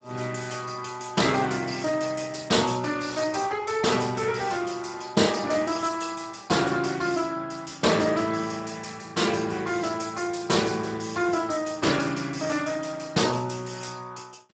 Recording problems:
lossy codec; Speex, log-spectral distance 7 dB, nothing above 7.8 kHz

